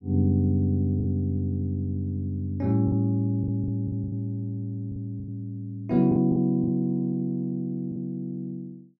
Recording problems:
packet loss; 6% of the sound replaced, filled with the last packet

